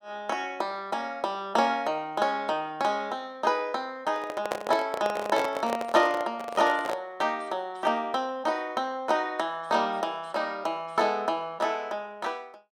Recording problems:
handling noise; from 4 to 7 s; peak +3 dB vs average level

